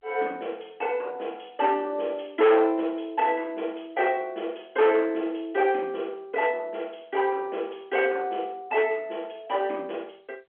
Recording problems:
phone line; 260 Hz to 3.5 kHz, G.711
distorted audio; soft clipping, signal-to-distortion ratio 8 dB

